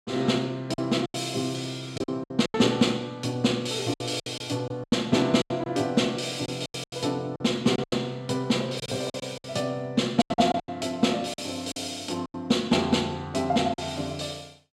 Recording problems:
packet loss; 11% of the sound replaced, filled with silence

